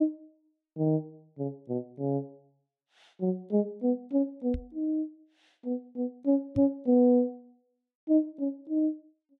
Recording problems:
microphone bump; at 4.5 s and at 6.5 s; peak -3 dB vs average level

